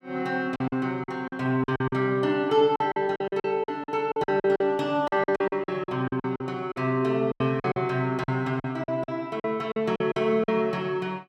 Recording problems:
packet loss; 15% of the sound replaced, filled with silence

